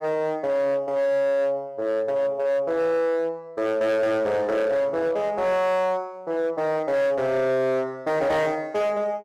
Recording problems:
distorted audio; hard clipping, signal-to-distortion ratio 11 dB

